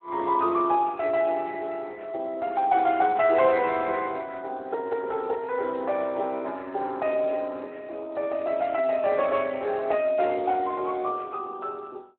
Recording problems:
telephone audio; 300 Hz to 3.7 kHz, Speex

